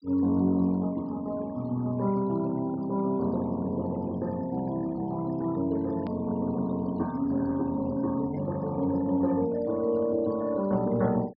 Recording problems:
treble missing; nothing above 5.5 kHz
denoising artefacts; signal-to-artefact ratio 24 dB
click at an edit; at 6 s

